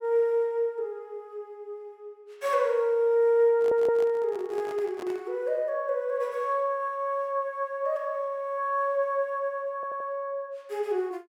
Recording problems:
stutter; at 3.5 s and at 10 s
handling noise; from 3.5 to 5.5 s; peak -10 dB vs average level

